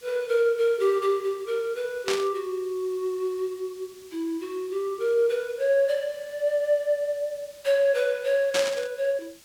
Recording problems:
hiss; SNR 25 dB
burst of static; at 2 s and at 8.5 s; peak +2 dB vs average level

